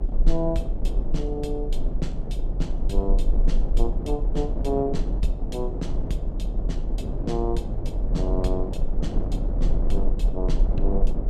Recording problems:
rumble; below 40 Hz, strongest tone 24 Hz, SNR -2 dB
wind on the microphone; below 350 Hz, SNR 2 dB

